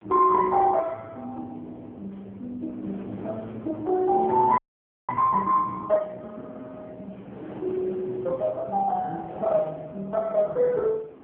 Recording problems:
telephone audio; 260 Hz to 2.1 kHz, AMR-NB
wind noise; below 610 Hz, SNR 18 dB
audio freezing; at 4.5 s for 0.5 s

